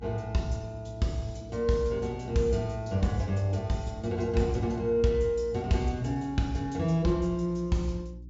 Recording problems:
low-pass filter; nothing above 8 kHz
hum; 60 Hz, harmonics up to 360 Hz, SNR 17 dB

